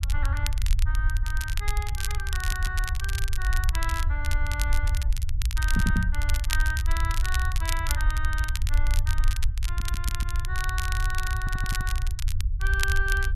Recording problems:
low-frequency rumble; below 66 Hz, SNR -5 dB
crackle; vinyl, SNR 3 dB
stutter; 4 times, first at 2.5 s
microphone bump; at 6 s; peak +9 dB vs average level

